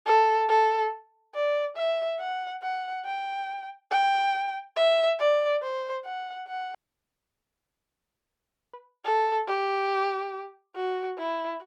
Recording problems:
dropout; at 7 s for 2 s

